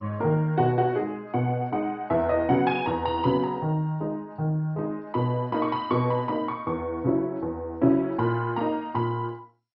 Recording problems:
codec artefacts; MP2, log-spectral distance 2 dB, nothing above 5.2 kHz

